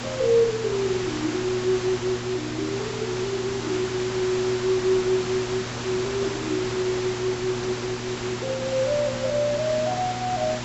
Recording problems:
low-pass filter; nothing above 7.7 kHz
hum; 60 Hz, harmonics up to 840 Hz, SNR 11 dB
background hiss; slope -3 dB per octave, SNR 7 dB
handling noise; from 5.5 to 8 s; peak -9 dB vs average level

